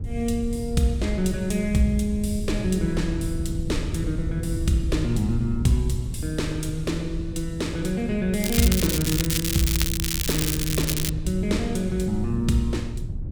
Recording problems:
wind noise; below 110 Hz, SNR 6 dB
crackling; from 8.5 to 11 s; loose cable, SNR 1 dB

